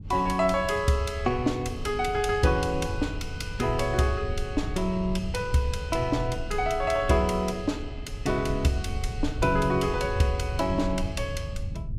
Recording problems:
low-frequency rumble; below 100 Hz, SNR 9 dB

